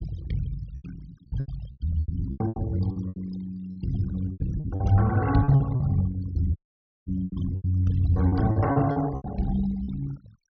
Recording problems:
treble missing; nothing above 6.1 kHz
noise reduction artefacts; signal-to-artefact ratio 19 dB
lost packets; 14% of the sound replaced, filled with repeated pitch periods
dropout; at 6.5 s for 0.5 s

